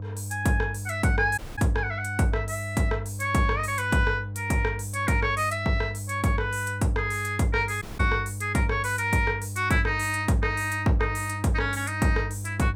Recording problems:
hum; 50 Hz, harmonics up to 500 Hz, SNR 9 dB
audio cutting out; at 1.5 s and at 8 s

